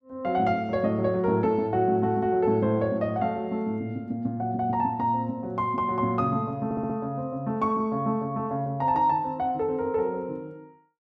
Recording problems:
stutter; at 6.5 s

